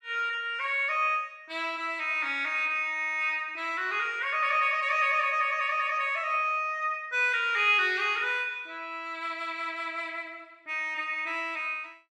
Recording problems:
none

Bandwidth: 12.5 kHz